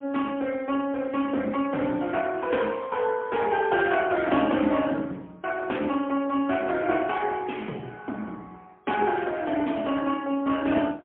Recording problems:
telephone audio; 150 Hz to 3.4 kHz, AMR-NB, then MP3

